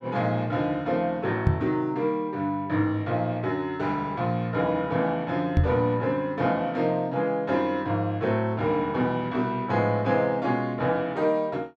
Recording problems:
microphone bump; at 1.5 s and at 5.5 s; peak +7 dB vs average level

